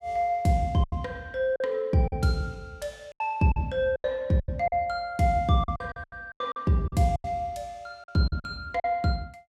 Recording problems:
lost packets; 12% of the sound replaced, filled with silence

